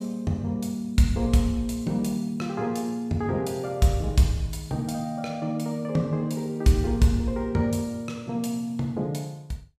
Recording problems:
none

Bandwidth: 15 kHz